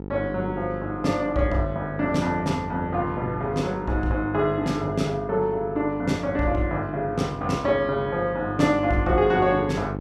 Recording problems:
hum; 50 Hz, harmonics up to 1 kHz, SNR 10 dB

